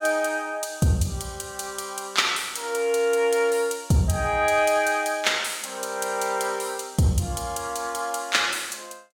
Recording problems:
none

